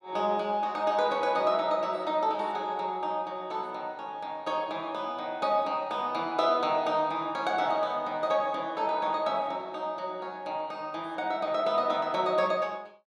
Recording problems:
none

